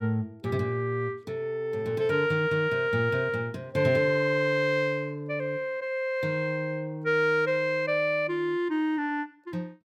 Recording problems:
none

